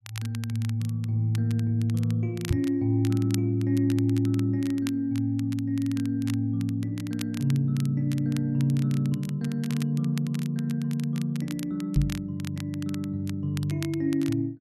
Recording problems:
crackle; vinyl, SNR 18 dB
knock on the microphone; at 2.5 s and at 12 s; peak +7 dB vs average level

